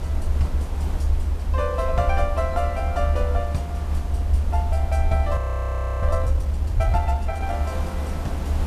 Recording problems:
background hiss; slope -7 dB per octave, SNR 9 dB
low-frequency rumble; below 76 Hz, SNR -4 dB
frozen audio; at 5.5 s for 0.5 s

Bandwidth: 14 kHz